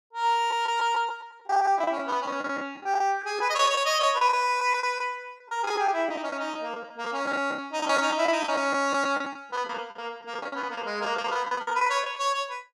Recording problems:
lost packets; 12% of the sound replaced, filled with the last packet

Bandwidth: 15 kHz